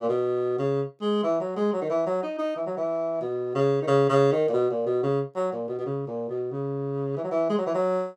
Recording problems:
none

